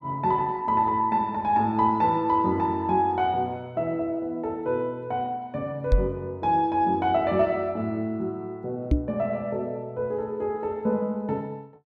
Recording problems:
microphone thump; at 6 s and at 9 s; peak +7 dB vs average level

